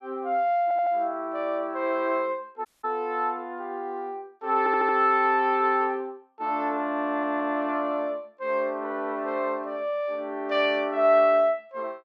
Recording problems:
stutter; at 0.5 s, at 4.5 s and at 7 s
dropout; at 2.5 s

